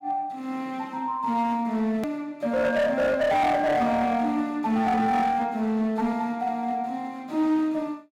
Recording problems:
distortion; hard clipping, uneven, signal-to-distortion ratio 11 dB
click at an edit; at 2 s

